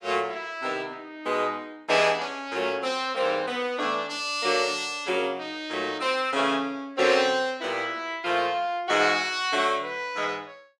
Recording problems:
none

